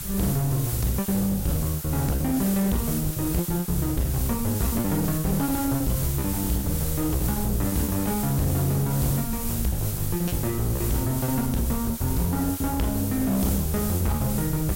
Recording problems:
distortion; hard clipping, uneven, signal-to-distortion ratio 7 dB
background hiss; slope -1 dB per octave, SNR 6 dB
rumble; below 120 Hz, SNR 11 dB
lost packets; 10% of the sound replaced, filled with repeated pitch periods

